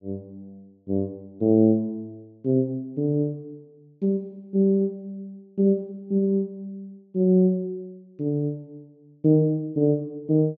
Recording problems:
low-pass filter; nothing above 8 kHz

